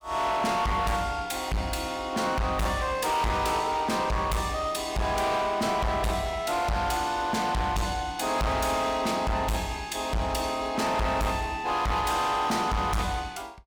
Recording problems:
distorted audio; hard clipping, uneven, signal-to-distortion ratio 6 dB

